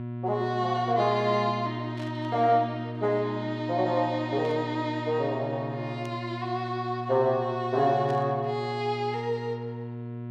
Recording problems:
hum; 60 Hz, harmonics up to 1.1 kHz, SNR 8 dB
burst of static; 4 times, first at 2 s; peak -14 dB vs average level

